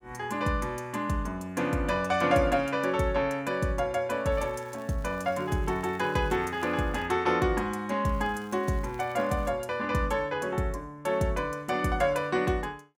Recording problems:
crackle; from 4.5 to 7 s and from 8 to 9.5 s; loose cable, SNR 29 dB

